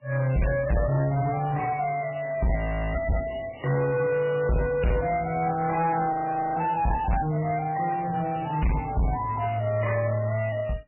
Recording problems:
codec artefacts; MP3, log-spectral distance 7 dB, nothing above 2.9 kHz
distorted audio; soft clipping, signal-to-distortion ratio 6 dB
frozen audio; at 2.5 s and at 6 s

